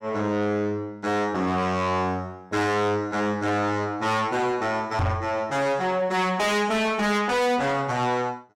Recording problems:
distorted audio; soft clipping, signal-to-distortion ratio 6 dB
microphone thump; at 5 s; peak +2 dB vs average level

